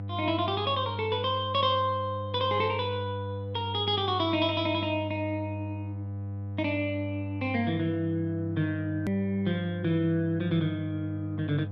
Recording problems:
hum; 50 Hz, harmonics up to 700 Hz, SNR 7 dB
hard cut with a click; at 9 s

